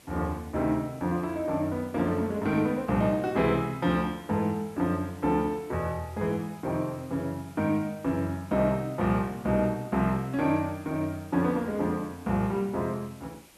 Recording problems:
background hiss; slope -3 dB per octave, SNR 25 dB

